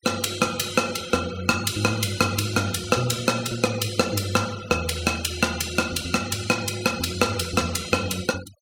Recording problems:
denoising artefacts; signal-to-artefact ratio 16 dB

